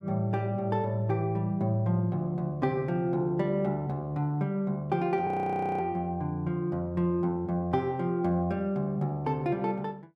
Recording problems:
frozen audio; at 5.5 s for 0.5 s

